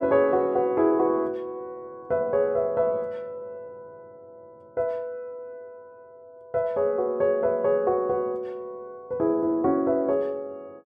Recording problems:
none

